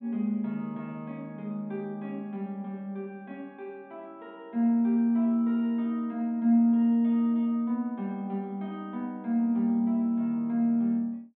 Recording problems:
low-pass filter; nothing above 4 kHz

